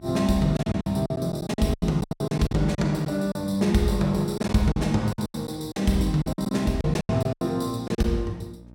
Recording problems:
electrical hum; 60 Hz, harmonics up to 900 Hz, SNR 25 dB
lost packets; 15% of the sound replaced, filled with silence

